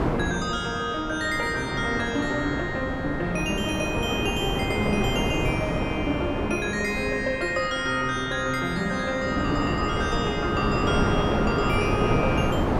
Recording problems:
wind on the microphone; below 640 Hz, SNR 2 dB

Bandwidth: 16 kHz